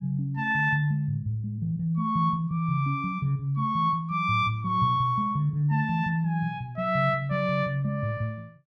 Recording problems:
none

